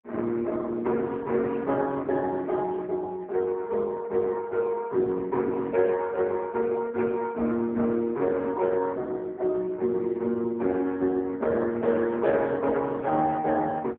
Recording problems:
phone line; 240 Hz to 3.4 kHz, AMR-NB

